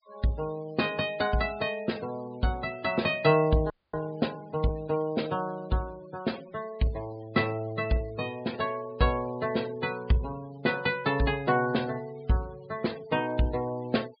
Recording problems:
treble cut off; nothing above 5 kHz
denoising artefacts; signal-to-artefact ratio 20 dB
audio freezing; at 3.5 s

